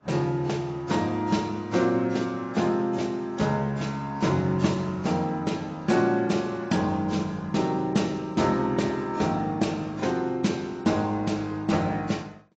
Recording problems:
lossy codec; AAC, log-spectral distance 3 dB, nothing above 7.6 kHz

